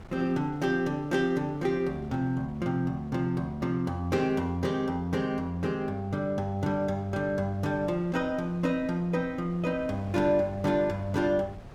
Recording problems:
wind noise; below 520 Hz, SNR 20 dB

